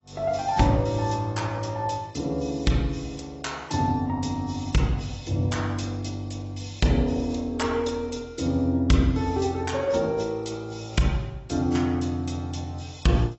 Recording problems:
lossy codec; AAC, log-spectral distance 4 dB, nothing above 7.8 kHz

